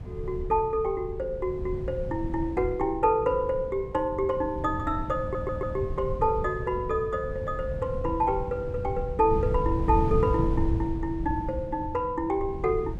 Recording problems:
wind noise; below 130 Hz, SNR 7 dB
audio stuttering; at 5 s

